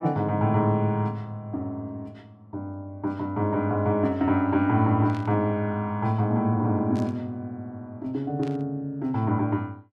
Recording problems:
burst of static; at 5 s, at 7 s and at 8.5 s; peak -16 dB vs average level

